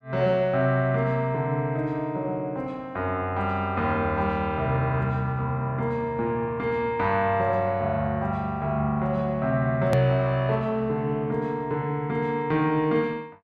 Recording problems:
edit click; at 10 s

